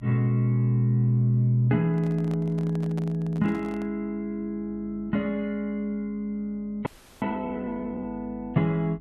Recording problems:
hum; 50 Hz, harmonics up to 300 Hz, SNR 25 dB
handling noise; from 2 to 4 s; peak -10 dB vs average level
audio freezing; at 7 s

